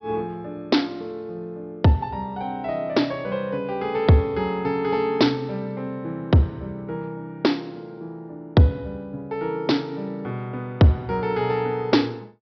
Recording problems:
treble missing; nothing above 5.5 kHz

